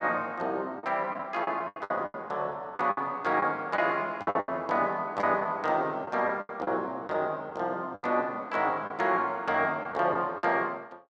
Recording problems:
packet loss; 10% of the sound replaced, filled with the last packet

